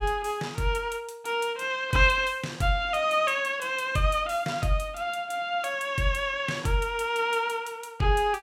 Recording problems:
none

